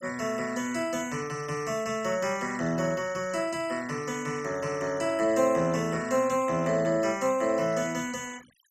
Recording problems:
noise reduction artefacts; signal-to-artefact ratio 20 dB

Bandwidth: 14.5 kHz